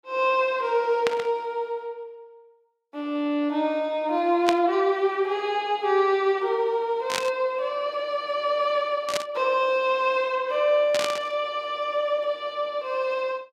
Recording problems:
static burst; 5 times, first at 1 s; peak +2 dB vs average level

